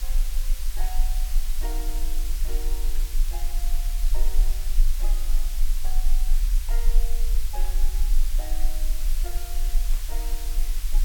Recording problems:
hum; 60 Hz, harmonics up to 540 Hz, SNR 16 dB
hiss; slope +3 dB per octave, SNR -7 dB
rumble; below 34 Hz, strongest tone 22 Hz, SNR -18 dB
burst of static; 4 times, first at 3 s; peak +1 dB vs average level

